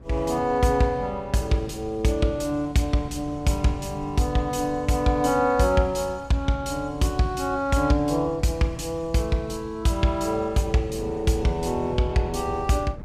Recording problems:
wind on the microphone; below 240 Hz, SNR 18 dB

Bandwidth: 15 kHz